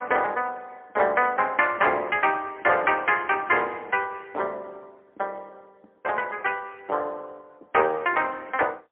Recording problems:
phone line; 320 Hz to 3.2 kHz, AMR-NB, then MP3

